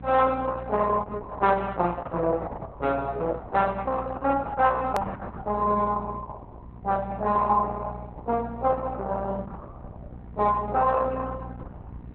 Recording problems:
lossy compression; Opus, log-spectral distance 3 dB, nothing above 13.1 kHz
hum; 60 Hz, harmonics up to 960 Hz, SNR 17 dB
click at an edit; at 5 s

